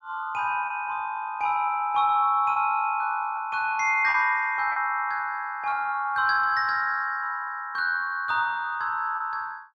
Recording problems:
lost packets; 3% of the sound replaced, filled with repeated pitch periods

